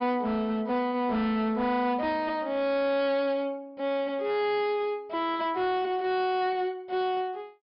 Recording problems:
low-pass filter; nothing above 5.5 kHz
distortion; hard clipping, signal-to-distortion ratio 11 dB

